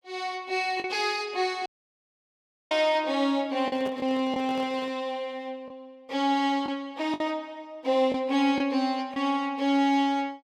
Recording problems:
lost packets; 4% of the sound replaced, filled with the last packet
dropout; at 1.5 s for 1 s
microphone handling noise; from 3.5 to 5 s; peak -8 dB vs average level

